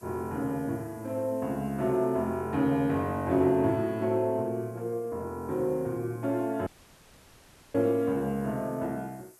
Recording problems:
background hiss; SNR 27 dB
audio cutting out; at 6.5 s for 1 s

